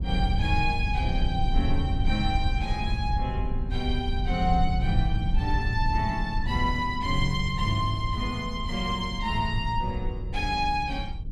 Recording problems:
rumble; below 84 Hz, SNR 2 dB

